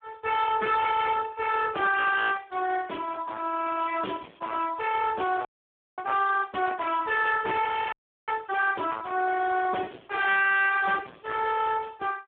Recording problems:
phone line; 450 Hz to 2.3 kHz, Speex
distortion; hard clipping, signal-to-distortion ratio 6 dB
audio freezing; at 5.5 s for 0.5 s and at 8 s

